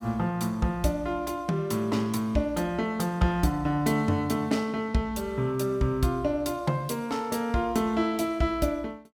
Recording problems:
none

